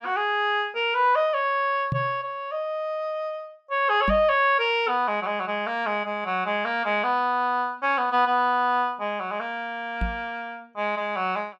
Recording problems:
microphone thump; at 2 s, at 4 s and at 10 s; peak +1 dB vs average level

